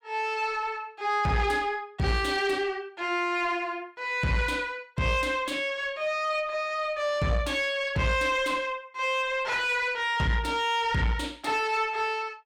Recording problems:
distorted audio; soft clipping, signal-to-distortion ratio 11 dB

